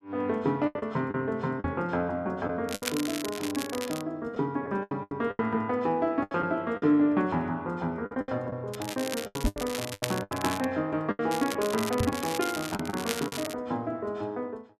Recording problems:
lost packets; 10% of the sound replaced, filled with the last packet
microphone bump; at 1.5 s, at 9.5 s and at 12 s; peak +6 dB vs average level
crackle; from 2.5 to 4 s, from 8.5 to 11 s and from 11 to 14 s; loose cable, SNR 7 dB

